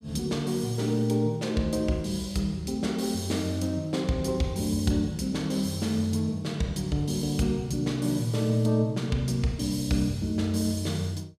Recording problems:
none

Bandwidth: 15.5 kHz